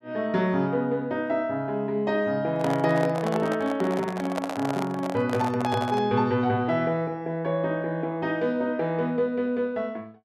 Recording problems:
handling noise; from 2.5 to 6 s; peak 0 dB vs average level

